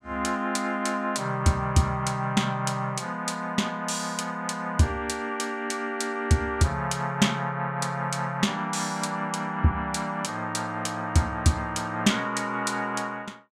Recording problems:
none

